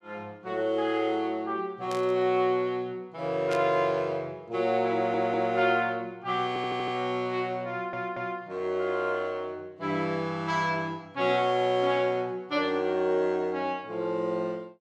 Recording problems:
burst of static; at 2 s and at 3.5 s; peak -6 dB vs average level
audio stuttering; at 5 s, at 6.5 s and at 7.5 s

